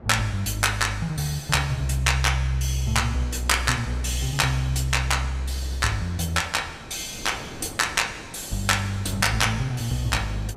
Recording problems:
wind noise; below 540 Hz, SNR 19 dB

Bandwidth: 15.5 kHz